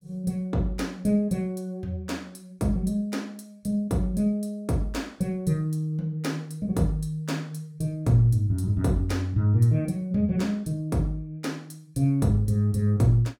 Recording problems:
none

